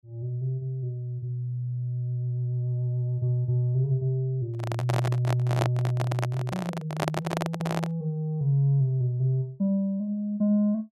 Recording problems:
microphone handling noise; from 4.5 to 8 s; peak +4 dB vs average level

